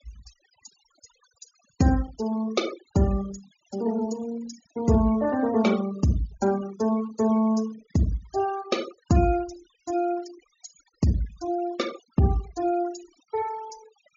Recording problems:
treble missing; nothing above 7.2 kHz
noise reduction artefacts; signal-to-artefact ratio 18 dB

